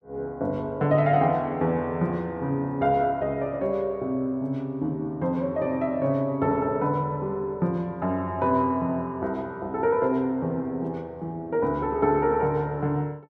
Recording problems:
none

